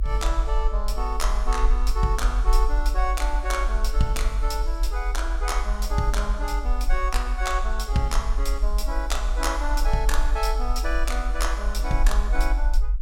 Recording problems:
low-frequency rumble; below 48 Hz, SNR -2 dB

